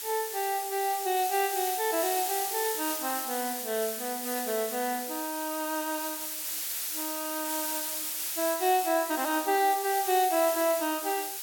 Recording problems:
hiss; slope +3 dB per octave, SNR 3 dB

